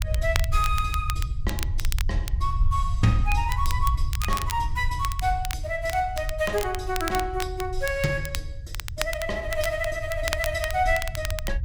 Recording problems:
low-frequency rumble; below 78 Hz, SNR 3 dB
crackling; vinyl, SNR 8 dB

